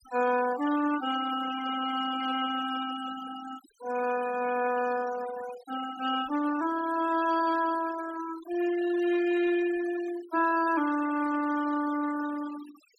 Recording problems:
noise reduction artefacts; signal-to-artefact ratio 14 dB

